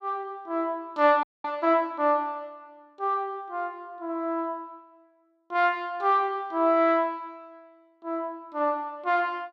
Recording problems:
frozen audio; at 1 s

